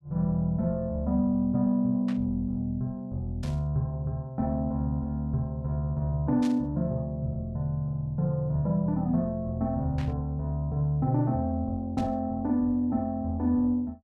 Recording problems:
burst of static; 5 times, first at 2 s; peak -10 dB vs average level

